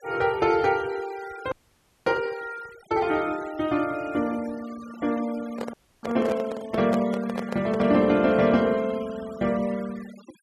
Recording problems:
noise reduction artefacts; signal-to-artefact ratio 20 dB
audio freezing; at 1.5 s for 0.5 s and at 5.5 s
handling noise; from 5.5 to 8 s; peak -1 dB vs average level

